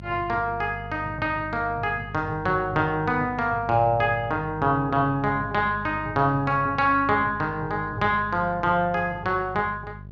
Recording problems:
hum; 50 Hz, harmonics up to 600 Hz, SNR 15 dB

